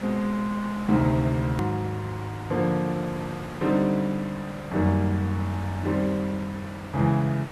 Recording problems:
background hiss; SNR 14 dB
hard cut with a click; at 1.5 s

